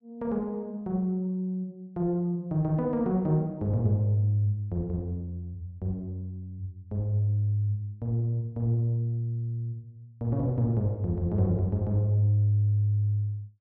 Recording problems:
none

